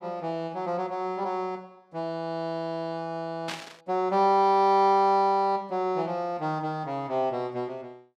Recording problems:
static burst; at 3.5 s; peak -4 dB vs average level

